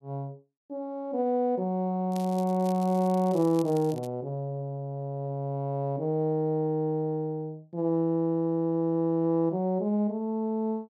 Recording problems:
crackle; from 2 to 4 s; loose cable, SNR 22 dB

